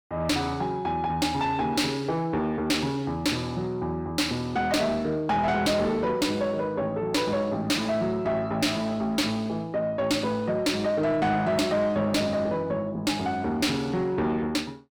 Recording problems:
distortion; soft clipping, signal-to-distortion ratio 6 dB

